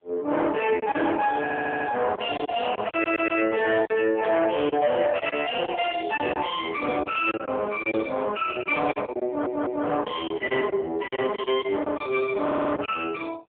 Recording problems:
phone line; 260 Hz to 2.6 kHz, AMR-NB
distorted audio; soft clipping, signal-to-distortion ratio 11 dB
lost packets; 7% of the sound replaced, filled with silence
audio stuttering; 4 times, first at 1.5 s
static burst; at 4 s and at 7 s; peak -7 dB vs average level

